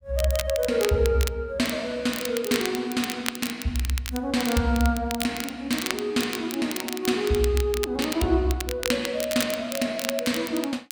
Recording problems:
crackling; vinyl, SNR 8 dB

